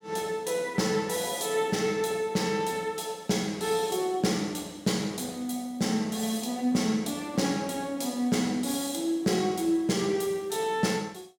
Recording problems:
none

